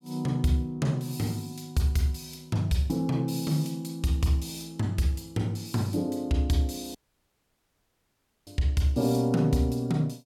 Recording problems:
audio cutting out; at 7 s for 1.5 s

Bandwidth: 17 kHz